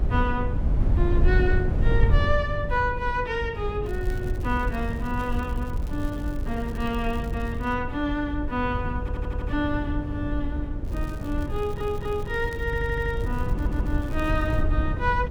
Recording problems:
hum; 50 Hz, harmonics up to 600 Hz, SNR 10 dB
wind on the microphone; below 92 Hz, SNR 0 dB
crackle; from 4 to 7.5 s and from 11 to 15 s; loose cable, SNR 22 dB
audio stuttering; 4 times, first at 9 s

